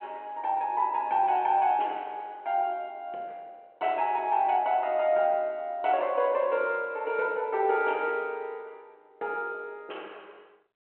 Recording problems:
telephone audio; 320 Hz to 3.1 kHz, G.726

